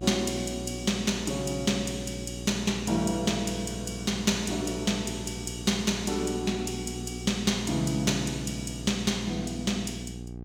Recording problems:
electrical hum; 60 Hz, harmonics up to 780 Hz, SNR 10 dB

